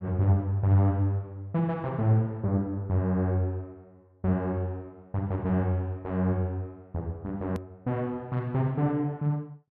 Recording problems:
edit click; at 7.5 s

